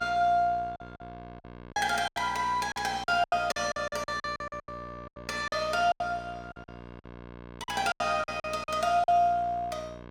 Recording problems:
electrical hum; 60 Hz, harmonics up to 3.3 kHz, SNR 18 dB
lost packets; 15% of the sound replaced, filled with silence

